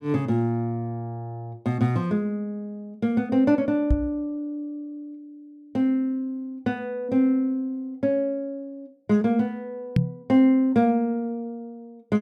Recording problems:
microphone thump; at 4 s and at 10 s; peak +7 dB vs average level

